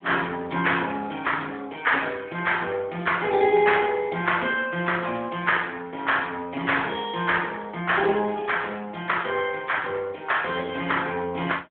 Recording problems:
telephone audio; 190 Hz to 3.5 kHz, AMR-NB

